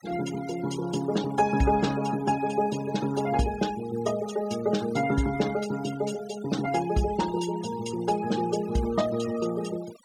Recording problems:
noise reduction artefacts; signal-to-artefact ratio 16 dB

